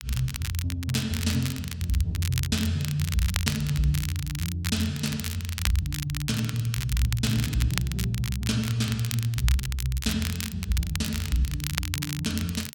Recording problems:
crackling; vinyl, SNR 7 dB

